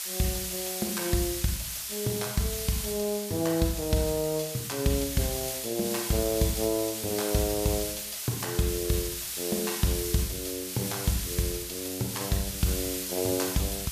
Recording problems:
hiss; slope +4 dB per octave, SNR 3 dB

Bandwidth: 14.5 kHz